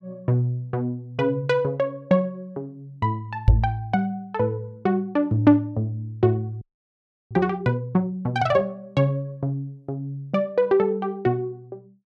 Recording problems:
knock on the microphone; at 3.5 s; peak +9 dB vs average level
audio freezing; at 6.5 s for 0.5 s

